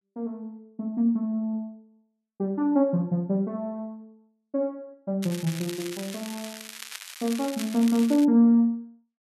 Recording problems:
crackling; from 5 to 8.5 s; loose cable, SNR 13 dB

